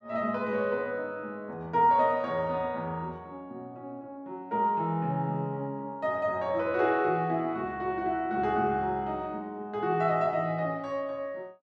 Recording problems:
none

